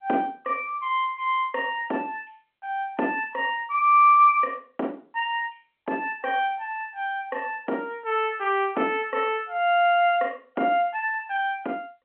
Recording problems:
phone line; 220 Hz to 3.5 kHz, G.711

